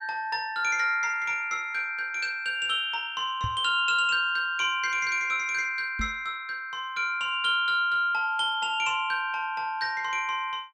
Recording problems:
microphone thump; at 3.5 s and at 6 s; peak -3 dB vs average level

